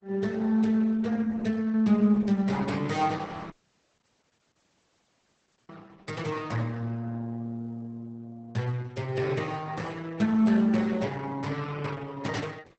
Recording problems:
lossy compression; Opus, then Opus, log-spectral distance 3 dB, nothing above 8 kHz
dropout; at 3.5 s for 2 s

